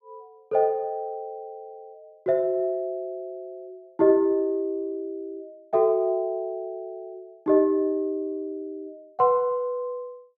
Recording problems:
none

